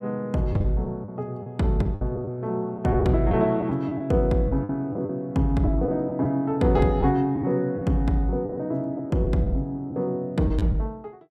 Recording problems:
lost packets; 7% of the sound replaced, filled with the last packet

